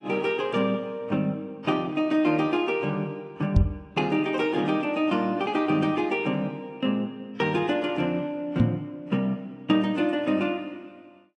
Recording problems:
codec artefacts; AAC, log-spectral distance 2 dB, nothing above 10.1 kHz
knock on the microphone; at 3.5 s and at 8.5 s; peak +9 dB vs average level

